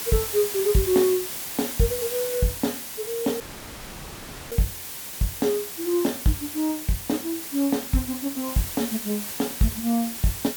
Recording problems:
hiss; slope 0 dB per octave, SNR 5 dB
audio cutting out; at 3.5 s for 1 s

